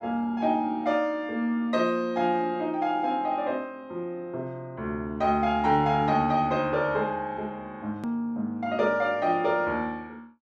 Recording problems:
edit click; at 8 s

